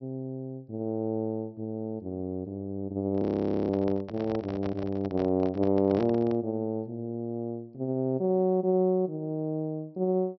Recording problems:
treble cut off; nothing above 5.9 kHz
handling noise; from 3 to 6.5 s; peak -6 dB vs average level
frozen audio; at 3 s

